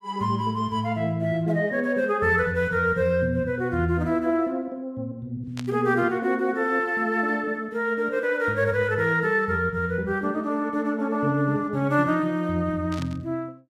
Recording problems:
burst of static; at 5.5 s and at 13 s; peak -9 dB vs average level

